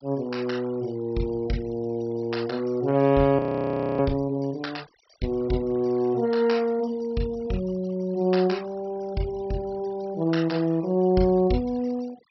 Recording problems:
low-pass filter; nothing above 5.6 kHz
noise reduction artefacts; signal-to-artefact ratio 23 dB
audio freezing; at 3.5 s for 0.5 s

